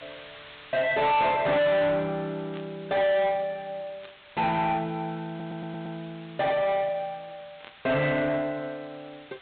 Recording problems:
treble missing; nothing above 4 kHz
distorted audio; soft clipping, signal-to-distortion ratio 7 dB
hiss; SNR 22 dB
static burst; at 2.5 s, at 4 s and at 7.5 s; peak -14 dB vs average level
audio stuttering; at 5.5 s

